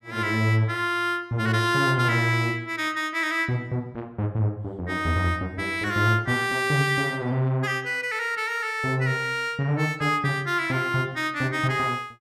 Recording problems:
none

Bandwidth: 14 kHz